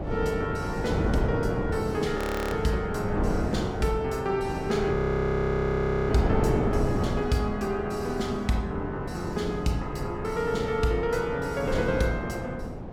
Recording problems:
wind noise; below 410 Hz, SNR 3 dB
frozen audio; at 2 s and at 5 s for 1 s

